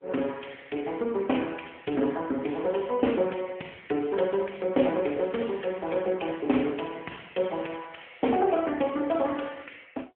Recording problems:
phone line; 240 Hz to 3.4 kHz, AMR-NB

